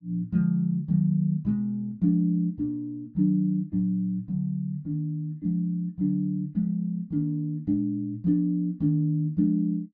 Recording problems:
none

